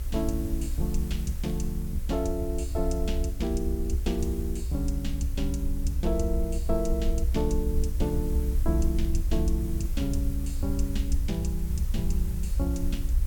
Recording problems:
hum; 50 Hz, harmonics up to 600 Hz, SNR 23 dB
hiss; slope -1 dB per octave, SNR 15 dB
low-frequency rumble; below 62 Hz, SNR -1 dB

